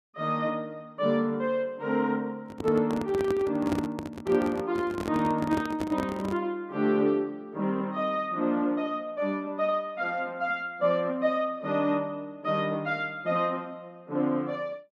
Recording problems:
microphone handling noise; from 2.5 to 6.5 s; peak +1 dB vs average level

